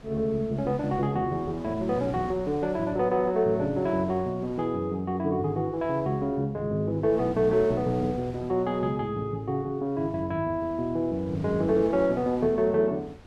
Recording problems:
wind on the microphone; below 760 Hz, SNR 20 dB

